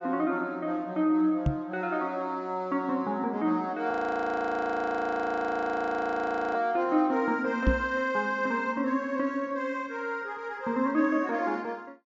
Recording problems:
low-pass filter; nothing above 7.7 kHz
knock on the microphone; at 1.5 s and at 7.5 s; peak +7 dB vs average level
audio freezing; at 4 s for 2.5 s

